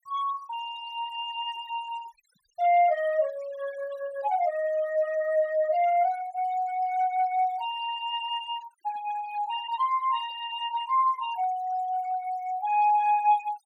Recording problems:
denoising artefacts; signal-to-artefact ratio 19 dB

